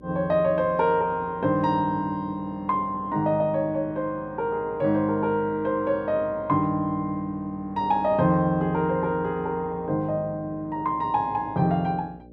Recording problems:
electrical hum; 60 Hz, harmonics up to 600 Hz, SNR 23 dB

